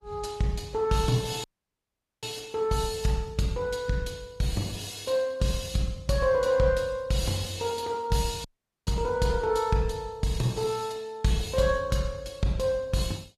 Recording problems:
codec artefacts; Opus, log-spectral distance 4 dB, nothing above 14.3 kHz
dropout; at 1.5 s for 1 s and at 8.5 s

